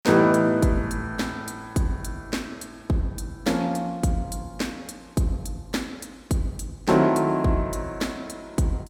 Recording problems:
none

